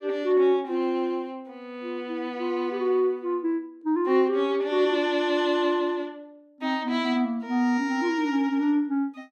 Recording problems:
none

